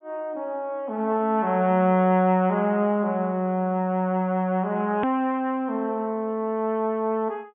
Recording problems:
low-pass filter; nothing above 3.4 kHz
edit click; at 5 s

